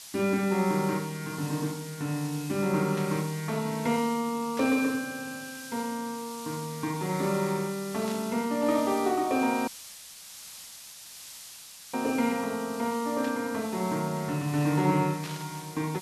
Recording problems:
background hiss; slope +4 dB per octave, SNR 14 dB
burst of static; 5 times, first at 3 s; peak -8 dB vs average level
dropout; at 9.5 s for 2.5 s

